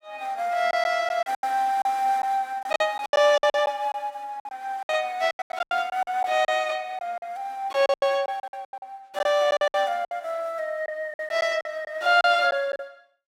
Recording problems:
packet loss; 14% of the sound replaced, filled with silence

